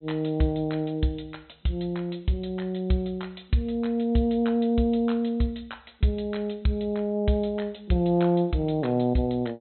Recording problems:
treble missing; nothing above 4.1 kHz

